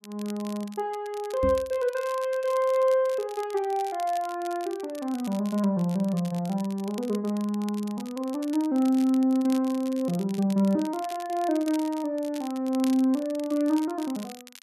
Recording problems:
crackle; vinyl, SNR 20 dB
microphone thump; at 1.5 s; peak 0 dB vs average level

